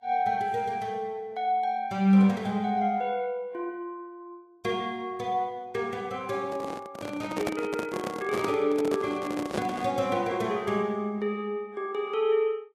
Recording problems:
lossy codec; Vorbis, log-spectral distance 2 dB, nothing above 13.5 kHz
handling noise; from 6.5 to 10 s; peak +2 dB vs average level

